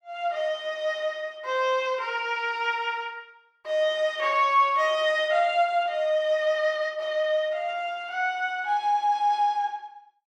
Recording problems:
none

